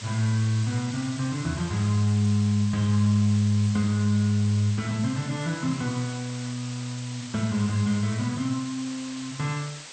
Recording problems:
lossy compression; MP2, log-spectral distance 8 dB, nothing above 13.1 kHz
background hiss; slope +1 dB per octave, SNR 14 dB

